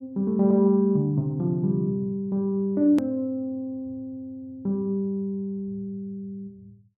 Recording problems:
edit click; at 3 s

